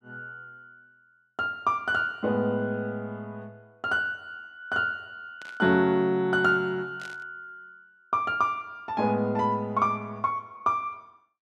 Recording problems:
burst of static; at 5.5 s and at 7 s; peak -14 dB vs average level

